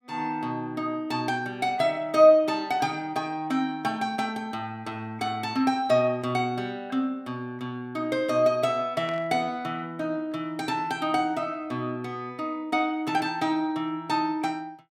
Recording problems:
static burst; at 9 s; peak -11 dB vs average level

